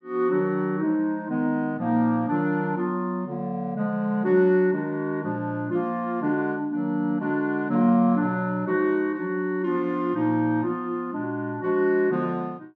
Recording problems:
none

